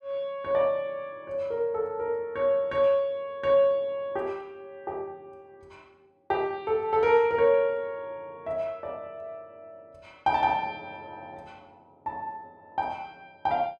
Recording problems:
none

